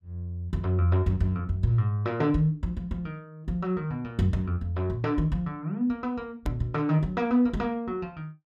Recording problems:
click at an edit; at 6.5 s

